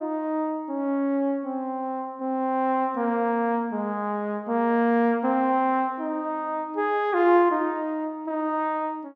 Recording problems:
none

